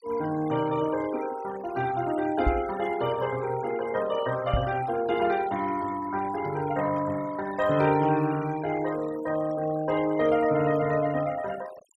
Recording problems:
noise reduction artefacts; signal-to-artefact ratio 17 dB
microphone bump; at 2.5 s and at 4.5 s; peak +4 dB vs average level

